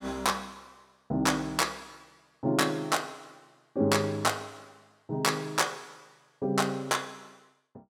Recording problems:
none

